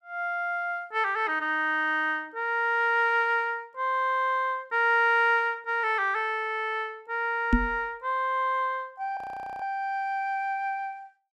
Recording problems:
knock on the microphone; at 7.5 s; peak +7 dB vs average level
frozen audio; at 9 s

